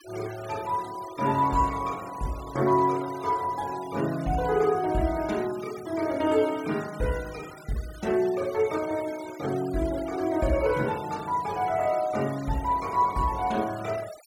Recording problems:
denoising artefacts; signal-to-artefact ratio 18 dB

